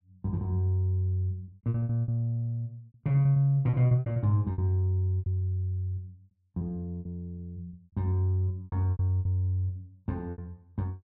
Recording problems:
lost packets; 13% of the sound replaced, filled with repeated pitch periods

